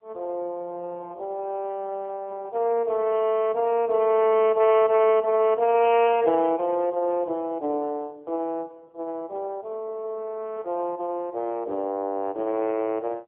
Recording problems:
phone line; 260 Hz to 3.3 kHz, AMR-NB

